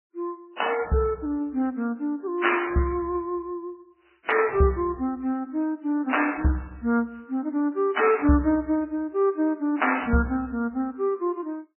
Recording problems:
lossy codec; MP3, then AAC, log-spectral distance 3 dB, nothing above 2.8 kHz

